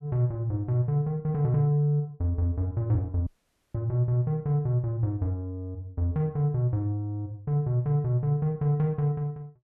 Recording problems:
audio cutting out; at 3.5 s

